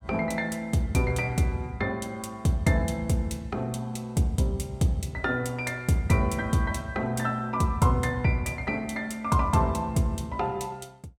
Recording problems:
none

